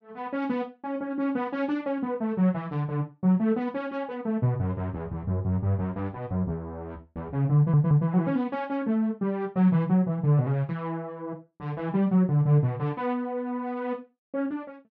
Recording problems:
audio stuttering; at 7.5 s

